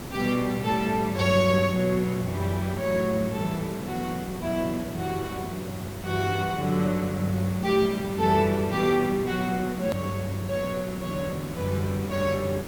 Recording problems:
hiss; slope -5 dB per octave, SNR 11 dB
click at an edit; at 10 s

